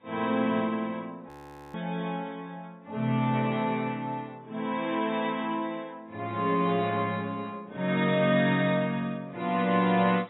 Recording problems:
codec artefacts; AAC, then AAC, log-spectral distance 2 dB, nothing above 3.8 kHz
audio freezing; at 1.5 s

